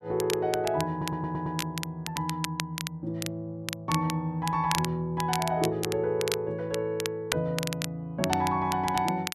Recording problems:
crackle; vinyl, SNR 7 dB
audio stuttering; at 1 s

